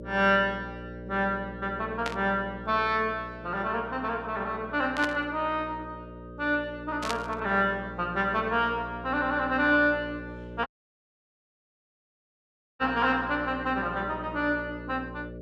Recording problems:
hum; 60 Hz, harmonics up to 600 Hz, SNR 14 dB
burst of static; at 2 s, at 5 s and at 7 s; peak 0 dB vs average level
audio cutting out; at 11 s for 2 s

